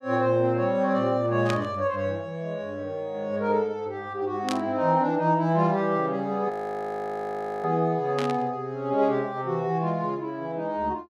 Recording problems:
static burst; at 1.5 s, at 4.5 s and at 8 s; peak -2 dB vs average level
audio freezing; at 6.5 s for 1 s

